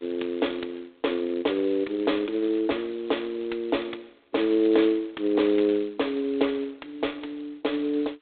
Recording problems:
telephone audio; 280 Hz to 3.7 kHz, G.726

